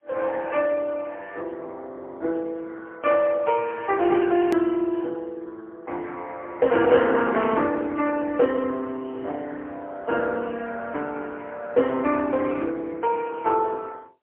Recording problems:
phone line; 260 Hz to 2.8 kHz, AMR-NB, then MP3
hard cut with a click; at 4.5 s

